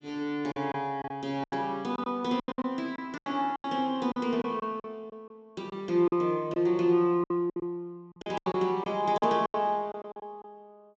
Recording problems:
low-pass filter; nothing above 8 kHz
packet loss; 13% of the sound replaced, filled with silence

